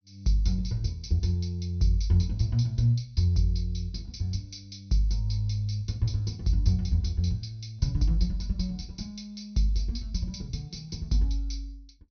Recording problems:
low-pass filter; nothing above 6.2 kHz

